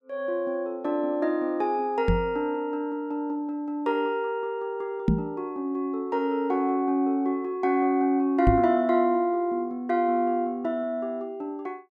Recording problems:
knock on the microphone; at 2 s, at 5 s and at 8.5 s; peak +8 dB vs average level

